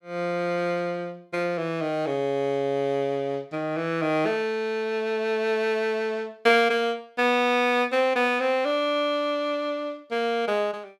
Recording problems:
none

